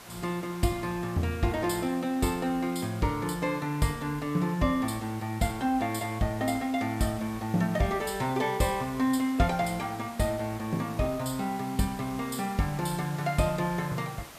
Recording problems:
hiss; slope -3 dB per octave, SNR 17 dB

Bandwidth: 14.5 kHz